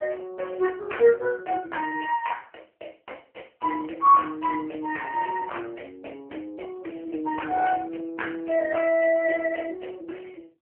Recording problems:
telephone audio; 260 Hz to 3 kHz, AMR-NB

